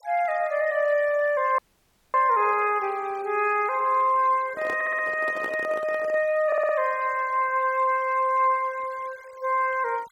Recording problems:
noise reduction artefacts; signal-to-artefact ratio 25 dB
dropout; at 1.5 s for 0.5 s
microphone handling noise; from 4.5 to 6 s; peak -8 dB vs average level
audio stuttering; at 5 s and at 6.5 s

